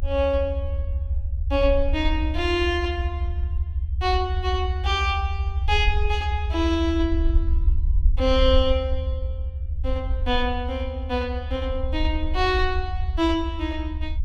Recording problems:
rumble; below 76 Hz, SNR 1 dB

